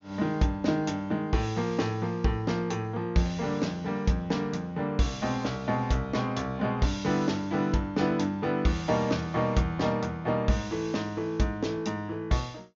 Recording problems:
treble missing; nothing above 6.9 kHz

